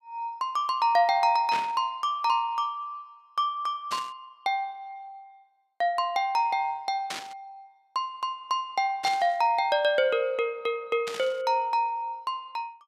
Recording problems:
burst of static; 5 times, first at 1.5 s; peak -3 dB vs average level

